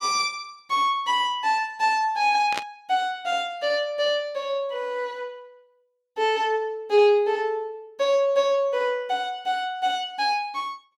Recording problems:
burst of static; at 2.5 s; peak -1 dB vs average level

